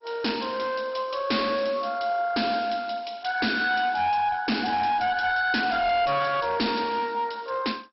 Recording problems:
codec artefacts; MP2, log-spectral distance 6 dB, nothing above 5.5 kHz
distorted audio; hard clipping, uneven, signal-to-distortion ratio 10 dB

